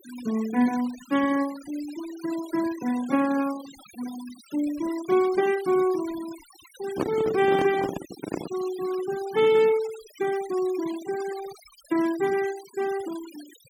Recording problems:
noise reduction artefacts; signal-to-artefact ratio 17 dB
handling noise; from 7 to 8.5 s; peak +3 dB vs average level

